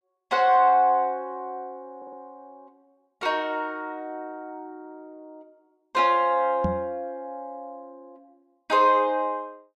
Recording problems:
audio stuttering; at 2 s
knock on the microphone; at 6.5 s; peak 0 dB vs average level

